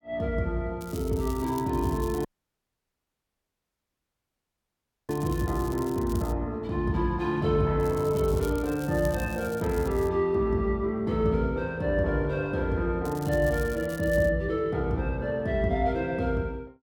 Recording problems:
crackle; from 1 to 6.5 s, from 8 to 10 s and from 13 to 14 s; loose cable, SNR 19 dB
dropout; at 2.5 s for 3 s

